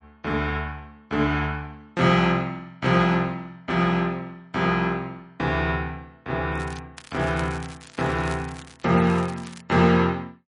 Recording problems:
lossy codec; MP3, log-spectral distance 3 dB
crackle; at 6.5 s and from 7 to 9.5 s; loose cable, SNR 20 dB

